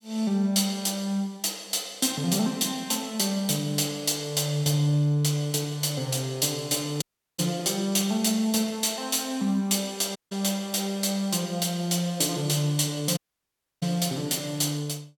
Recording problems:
audio cutting out; at 7 s, at 10 s and at 13 s for 0.5 s

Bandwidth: 18.5 kHz